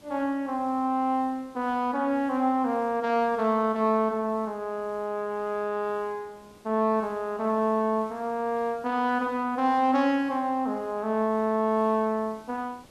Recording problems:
background hiss; SNR 28 dB

